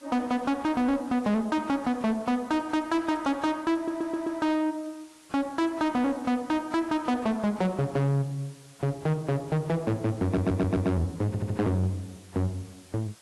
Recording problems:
lossy codec; AAC, log-spectral distance 4 dB, nothing above 11.3 kHz
distorted audio; soft clipping, signal-to-distortion ratio 11 dB
background hiss; slope 0 dB per octave, SNR 25 dB
audio stuttering; at 4 s, at 10 s and at 11 s

